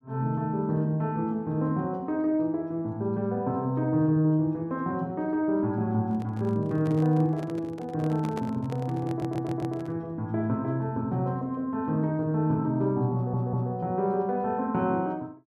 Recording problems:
handling noise; from 6 to 10 s; peak -5 dB vs average level
stutter; at 9 s and at 13 s

